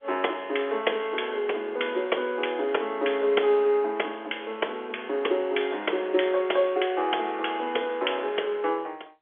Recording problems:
phone line; 280 Hz to 3.4 kHz, G.711

